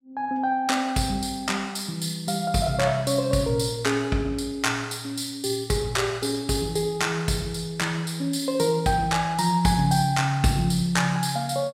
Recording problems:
none

